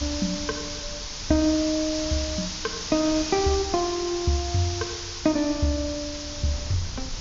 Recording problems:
low-pass filter; nothing above 6.9 kHz
background hiss; SNR 6 dB
wind on the microphone; below 110 Hz, SNR 16 dB

